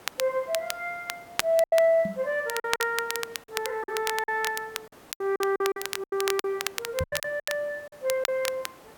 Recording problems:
hiss; slope -5 dB per octave, SNR 23 dB
crackling; vinyl, SNR 6 dB
lost packets; 10% of the sound replaced, filled with silence
knock on the microphone; at 2 s and at 7 s; peak 0 dB vs average level

